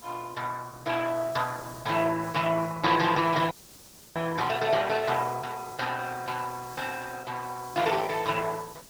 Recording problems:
lossy compression; MP2, then Opus, log-spectral distance 4 dB
background hiss; SNR 20 dB
audio freezing; at 3.5 s for 0.5 s

